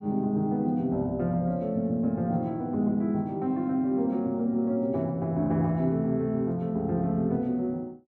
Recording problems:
none

